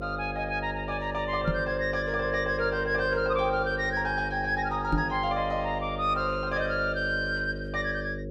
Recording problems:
hum; 50 Hz, harmonics up to 550 Hz, SNR 8 dB
microphone thump; at 1.5 s and at 5 s; peak +4 dB vs average level

